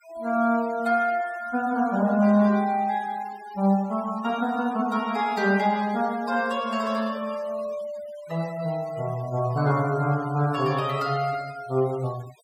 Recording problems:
noise reduction artefacts; signal-to-artefact ratio 22 dB

